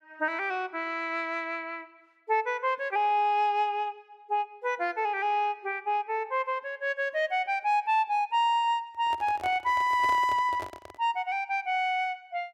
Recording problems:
handling noise; from 9 to 11 s; peak -8 dB vs average level

